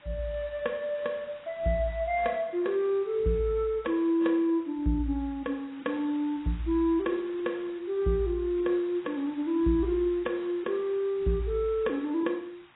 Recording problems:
lossy compression; AAC, log-spectral distance 3 dB, nothing above 3.7 kHz
hiss; SNR 24 dB

